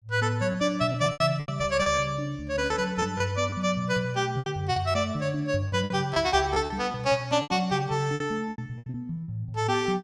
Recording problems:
packet loss; 12% of the sound replaced, filled with repeated pitch periods

